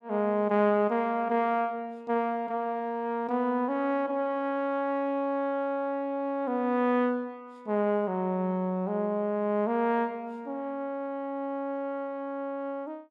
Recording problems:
none

